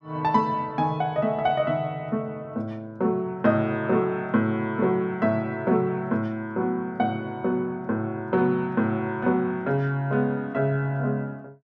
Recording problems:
none

